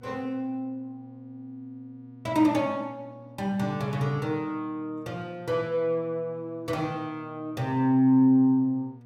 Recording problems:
mains hum; 60 Hz, harmonics up to 960 Hz, SNR 23 dB

